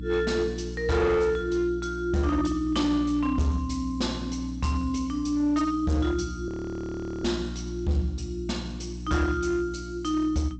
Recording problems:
lossy compression; G.722, log-spectral distance 2 dB, nothing above 7.8 kHz
distorted audio; hard clipping, uneven, signal-to-distortion ratio 10 dB
hum; 60 Hz, harmonics up to 300 Hz, SNR 10 dB
audio freezing; at 6.5 s for 1 s

